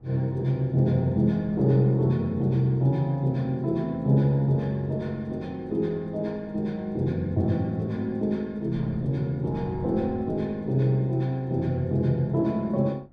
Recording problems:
wind noise; below 250 Hz, SNR 21 dB

